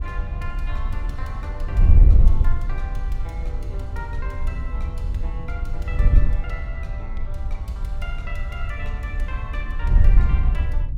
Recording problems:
wind on the microphone; below 62 Hz, SNR -13 dB

